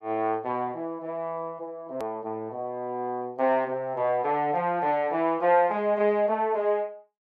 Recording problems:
hard cut with a click; at 2 s

